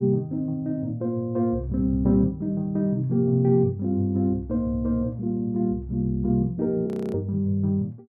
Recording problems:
frozen audio; at 7 s

